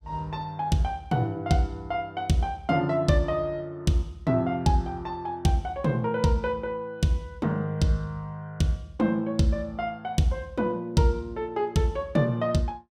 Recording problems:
none

